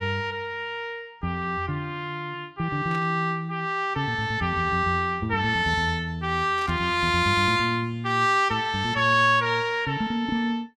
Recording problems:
static burst; at 3 s and at 6.5 s; peak -13 dB vs average level

